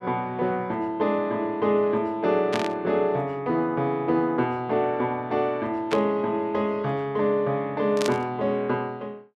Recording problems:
static burst; at 2.5 s, at 6 s and at 8 s; peak -1 dB vs average level

